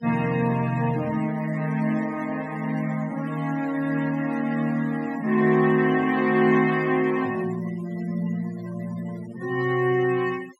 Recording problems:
denoising artefacts; signal-to-artefact ratio 19 dB

